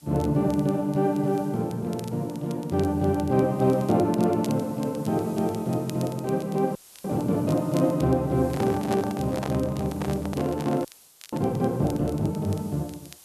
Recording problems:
hiss; SNR 25 dB
crackling; vinyl, SNR 23 dB
frozen audio; at 7 s and at 11 s
microphone handling noise; from 8.5 to 11 s; peak -3 dB vs average level

